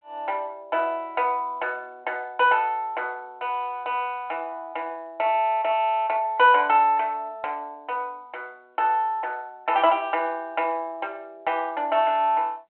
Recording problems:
telephone audio; 300 Hz to 3.2 kHz, G.726

